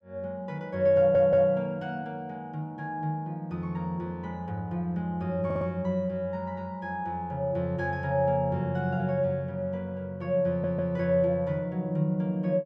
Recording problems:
audio stuttering; at 1 s, at 5.5 s and at 10 s

